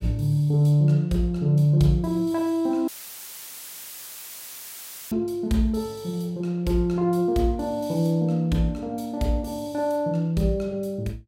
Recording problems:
dropout; at 3 s for 2 s; filled with static

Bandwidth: 16 kHz